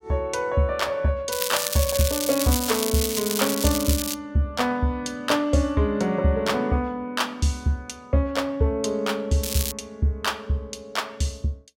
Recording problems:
crackling; from 1.5 to 4 s and at 9.5 s; loose cable, SNR 2 dB

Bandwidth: 16.5 kHz